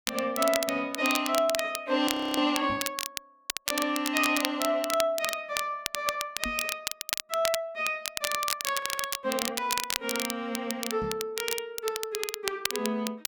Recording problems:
crackle; vinyl, SNR 3 dB
audio freezing; at 2 s and at 9 s
microphone bump; at 2.5 s, at 6.5 s and at 11 s; peak -4 dB vs average level

